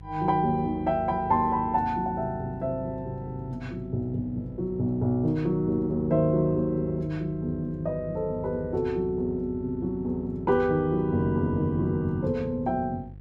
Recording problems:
electrical hum; 50 Hz, harmonics up to 500 Hz, SNR 17 dB

